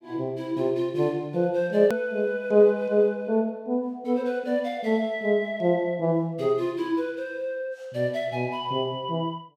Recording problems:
click at an edit; at 2 s

